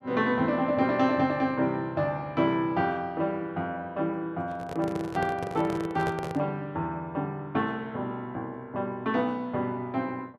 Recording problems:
handling noise; from 4.5 to 6.5 s; peak -1 dB vs average level

